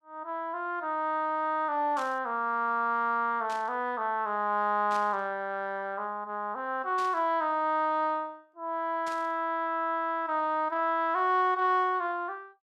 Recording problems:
burst of static; 5 times, first at 2 s; peak -11 dB vs average level

